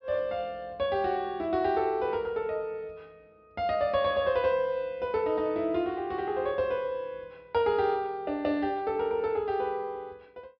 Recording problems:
treble missing; nothing above 5.5 kHz

